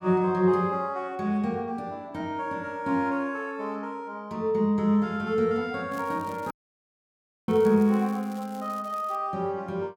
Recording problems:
crackle; from 6 to 9 s; loose cable, SNR 25 dB
dropout; at 6.5 s for 1 s

